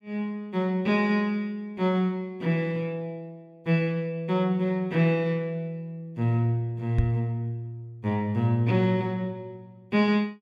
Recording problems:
microphone bump; at 7 s; peak +6 dB vs average level

